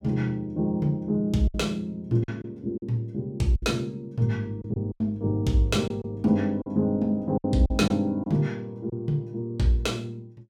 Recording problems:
lost packets; 6% of the sound replaced, filled with silence

